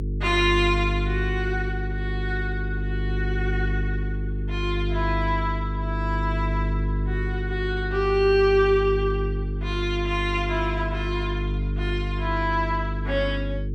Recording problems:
hum; 50 Hz, harmonics up to 450 Hz, SNR 2 dB

